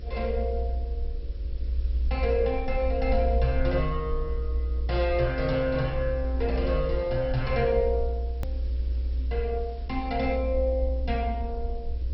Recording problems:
lossy compression; MP2, log-spectral distance 2 dB, nothing above 5.5 kHz
hum; 50 Hz, harmonics up to 600 Hz, SNR 22 dB
hiss; SNR 28 dB
rumble; below 62 Hz, strongest tone 60 Hz, SNR 2 dB
hard cut with a click; at 8.5 s

